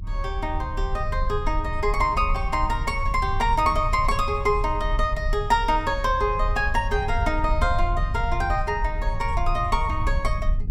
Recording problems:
rumble; below 66 Hz, strongest tone 34 Hz, SNR 4 dB

